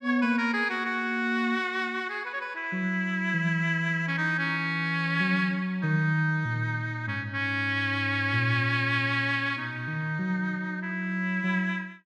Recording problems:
none

